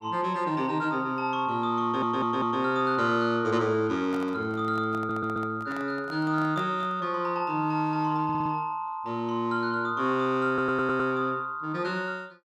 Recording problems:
audio stuttering; 4 times, first at 2 s
microphone handling noise; from 4 to 7 s; peak -9 dB vs average level

